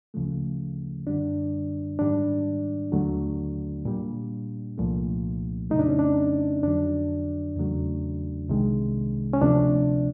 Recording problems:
none

